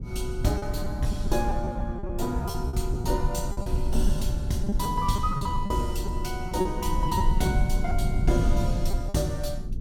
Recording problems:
low-frequency rumble; below 88 Hz, SNR 0 dB
lost packets; 9% of the sound replaced, filled with repeated pitch periods

